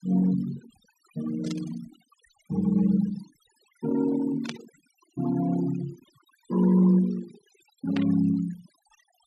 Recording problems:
noise reduction artefacts; signal-to-artefact ratio 17 dB
burst of static; at 1.5 s, at 4.5 s and at 8 s; peak -6 dB vs average level

